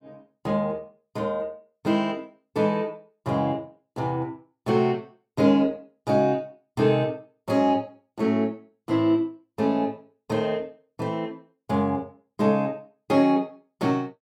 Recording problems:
none

